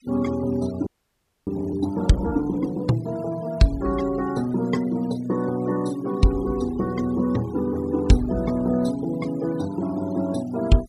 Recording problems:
denoising artefacts; signal-to-artefact ratio 20 dB
audio freezing; at 1 s for 0.5 s

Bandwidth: 14.5 kHz